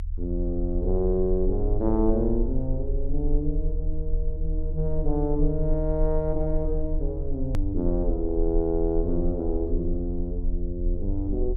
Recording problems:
rumble; below 38 Hz, SNR 3 dB
hard cut with a click; at 7.5 s

